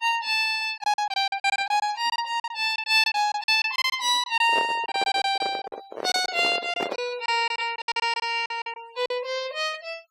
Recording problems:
noise reduction artefacts; signal-to-artefact ratio 22 dB
packet loss; 13% of the sound replaced, filled with silence
handling noise; from 4.5 to 7 s; peak -2 dB vs average level

